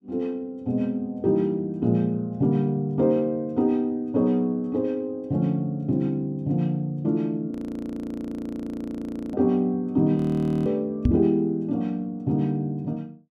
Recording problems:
audio freezing; at 7.5 s for 2 s and at 10 s
knock on the microphone; at 11 s; peak +7 dB vs average level

